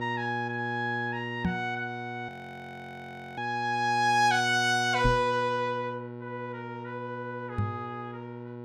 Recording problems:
hum; 60 Hz, harmonics up to 1.4 kHz, SNR 10 dB
microphone bump; at 1.5 s, at 5 s and at 7.5 s; peak +4 dB vs average level
frozen audio; at 2.5 s for 1 s

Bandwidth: 16 kHz